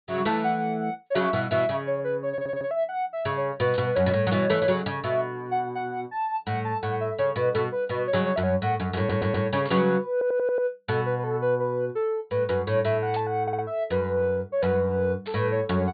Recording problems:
treble cut off; nothing above 4.6 kHz
stutter; 4 times, first at 2.5 s
burst of static; 4 times, first at 3.5 s; peak -12 dB vs average level

